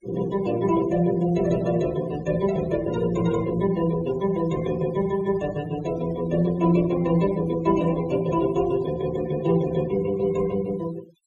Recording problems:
denoising artefacts; signal-to-artefact ratio 19 dB

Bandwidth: 13.5 kHz